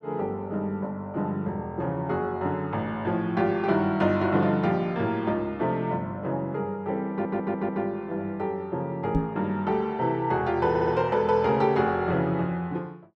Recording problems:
stutter; at 7 s and at 11 s
knock on the microphone; at 9 s; peak +5 dB vs average level

